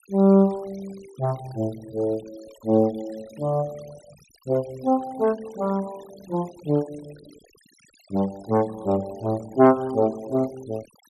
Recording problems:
denoising artefacts; signal-to-artefact ratio 24 dB

